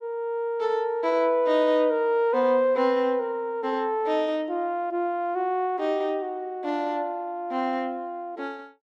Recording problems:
none

